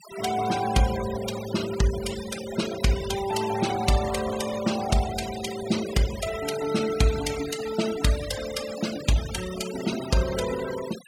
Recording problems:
denoising artefacts; signal-to-artefact ratio 10 dB

